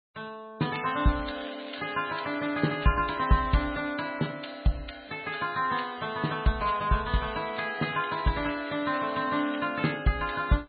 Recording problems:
treble cut off; nothing above 4.2 kHz
lossy codec; MP3, log-spectral distance 9 dB
crackle; from 0.5 to 4 s and from 6.5 to 9.5 s; loose cable, SNR 17 dB

